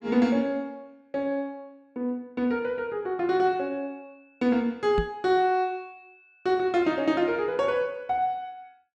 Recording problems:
microphone thump; at 5 s; peak +1 dB vs average level

